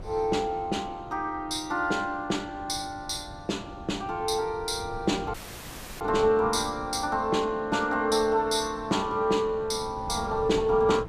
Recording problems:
wind on the microphone; below 320 Hz, SNR 17 dB
audio cutting out; at 5.5 s for 0.5 s

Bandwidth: 14.5 kHz